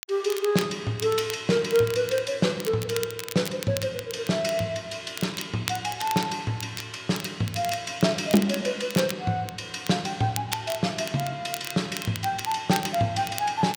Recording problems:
crackle; vinyl, SNR 11 dB

